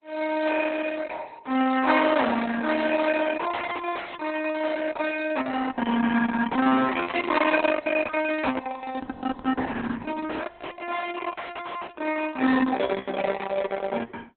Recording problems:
codec artefacts; Opus, log-spectral distance 5 dB, nothing above 4 kHz

